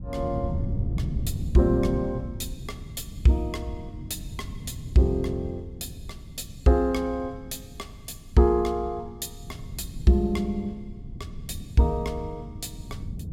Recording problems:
wind noise; below 160 Hz, SNR 10 dB

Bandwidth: 16 kHz